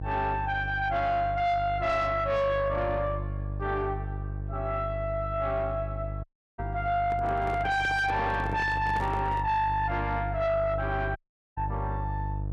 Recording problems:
distortion; soft clipping, signal-to-distortion ratio 10 dB
mains hum; 50 Hz, harmonics up to 700 Hz, SNR 7 dB
dropout; at 6 s and at 11 s
handling noise; from 7 to 9.5 s; peak -4 dB vs average level

